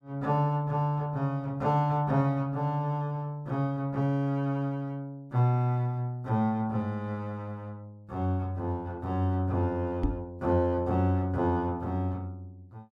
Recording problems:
microphone bump; at 10 s; peak +4 dB vs average level

